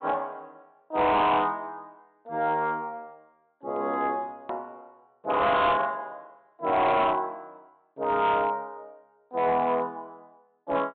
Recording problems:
low-pass filter; nothing above 4 kHz
distorted audio; hard clipping, signal-to-distortion ratio 10 dB
click at an edit; at 4.5 s

